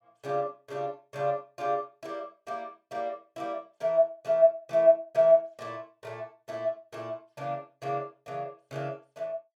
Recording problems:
none

